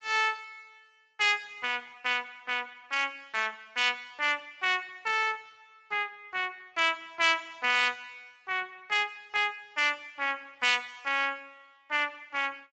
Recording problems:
codec artefacts; Speex, then MP3, log-spectral distance 5 dB, nothing above 7.8 kHz

